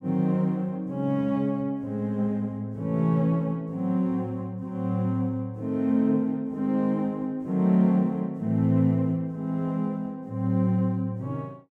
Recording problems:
none

